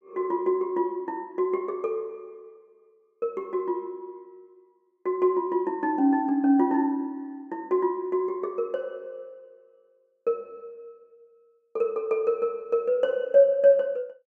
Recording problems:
none

